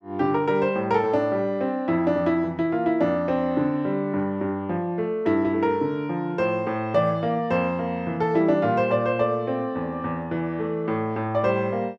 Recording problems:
none

